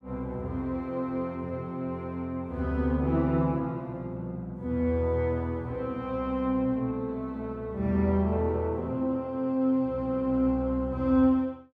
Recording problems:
none

